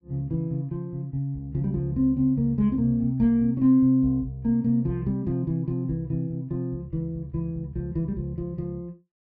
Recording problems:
none

